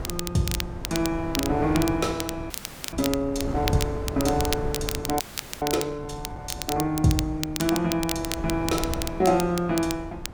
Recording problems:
wind noise; below 310 Hz, SNR 9 dB
crackling; vinyl, SNR 7 dB
audio freezing; at 2.5 s and at 5 s

